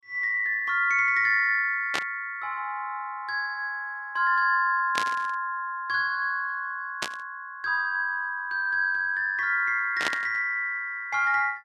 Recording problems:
burst of static; 4 times, first at 2 s; peak +1 dB vs average level

